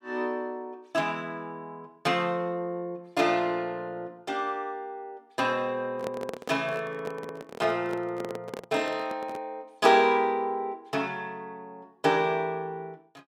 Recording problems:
handling noise; from 6 to 9.5 s; peak -2 dB vs average level

